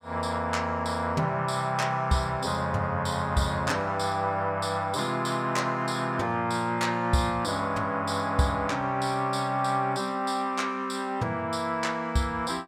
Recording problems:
none

